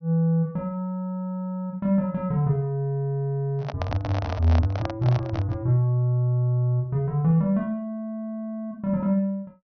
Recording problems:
treble missing; nothing above 6.2 kHz
handling noise; from 3.5 to 5.5 s; peak -2 dB vs average level

